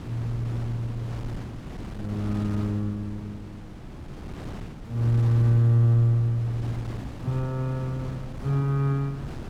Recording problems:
wind noise; below 320 Hz, SNR 13 dB

